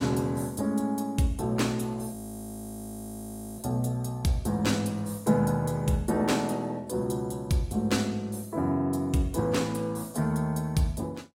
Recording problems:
lossy codec; AAC, log-spectral distance 2 dB, nothing above 15.5 kHz
audio freezing; at 2 s for 1.5 s

